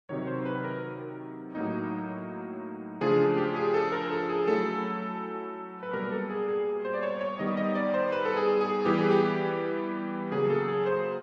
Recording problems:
lossy codec; MP2, then Vorbis, log-spectral distance 2 dB

